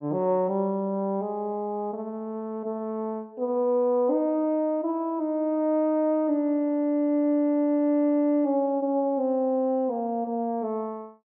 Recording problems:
treble missing; nothing above 3.3 kHz

